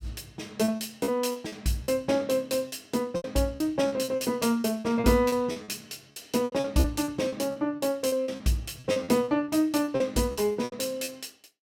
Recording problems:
packet loss; 16% of the sound replaced, filled with repeated pitch periods

